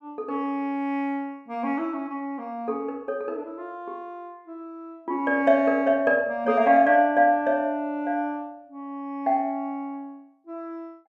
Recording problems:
none

